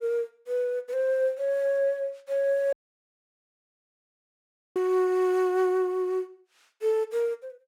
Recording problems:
dropout; at 2.5 s for 2 s

